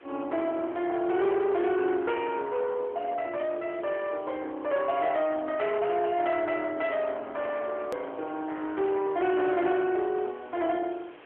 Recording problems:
telephone audio; 260 Hz to 3.3 kHz, AMR-NB
distortion; soft clipping, signal-to-distortion ratio 12 dB
background hiss; SNR 24 dB
click at an edit; at 8 s

